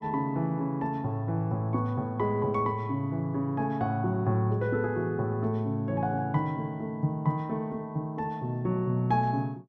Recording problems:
none

